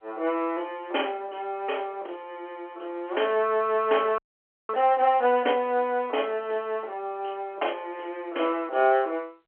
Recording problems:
phone line; 300 Hz to 3.3 kHz, G.711
audio freezing; at 4 s for 0.5 s

